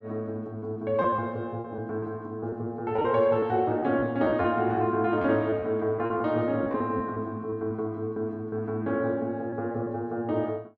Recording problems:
lost packets; 8% of the sound replaced, filled with repeated pitch periods

